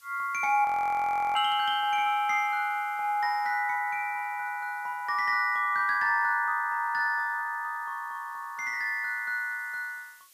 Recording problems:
background hiss; SNR 29 dB
audio freezing; at 0.5 s for 0.5 s

